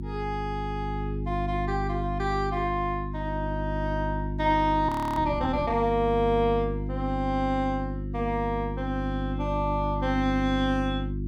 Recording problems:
hum; 50 Hz, harmonics up to 350 Hz, SNR 4 dB
frozen audio; at 5 s

